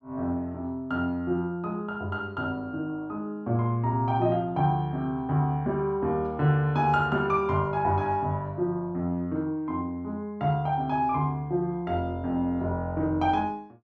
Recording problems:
none

